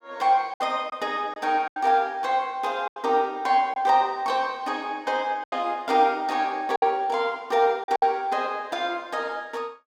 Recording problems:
lost packets; 5% of the sound replaced, filled with silence

